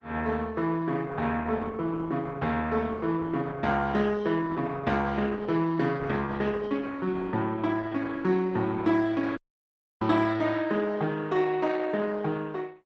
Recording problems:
codec artefacts; Opus, log-spectral distance 3 dB, nothing above 7.8 kHz
dropout; at 9.5 s for 0.5 s

